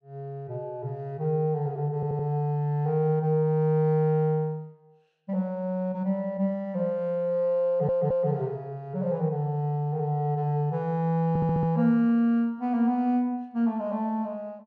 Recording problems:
stutter; at 2 s, at 7.5 s and at 11 s

